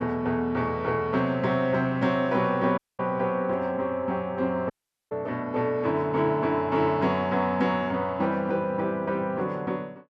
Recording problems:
dropout; at 3 s and at 4.5 s

